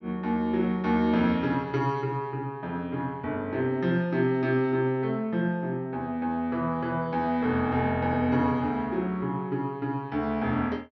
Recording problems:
treble missing; nothing above 6.1 kHz

